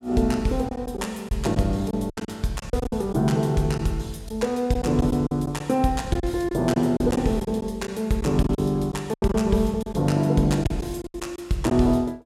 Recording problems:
packet loss; 9% of the sound replaced, filled with silence

